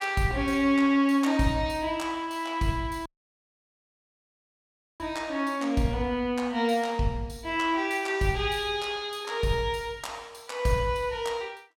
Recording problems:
audio cutting out; at 3 s for 2 s

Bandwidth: 17 kHz